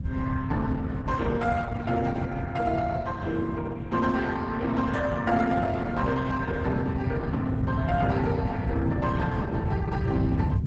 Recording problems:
lossy codec; Opus, log-spectral distance 3 dB, nothing above 7.8 kHz
wind on the microphone; below 150 Hz, SNR 1 dB

